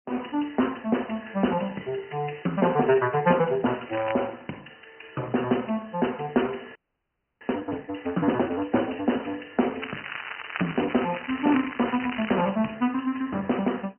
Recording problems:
phone line; 150 Hz to 3 kHz, AMR-NB
crackling; at 4 s and from 10 to 12 s; loose cable, SNR 9 dB
frozen audio; at 7 s for 0.5 s

